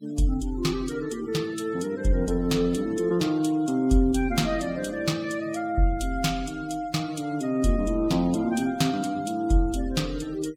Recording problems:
noise reduction artefacts; signal-to-artefact ratio 22 dB

